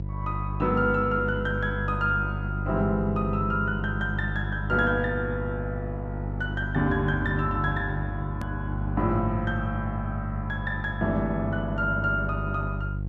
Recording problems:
hum; 50 Hz, harmonics up to 500 Hz, SNR 4 dB
edit click; at 8.5 s

